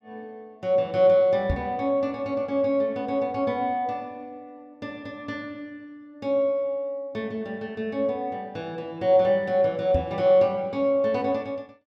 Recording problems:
microphone thump; at 1.5 s and at 10 s; peak +1 dB vs average level

